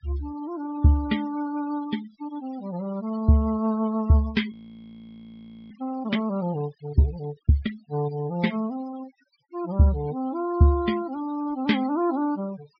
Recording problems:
treble cut off; nothing above 5.5 kHz
noise reduction artefacts; signal-to-artefact ratio 18 dB
frozen audio; at 4.5 s for 1 s

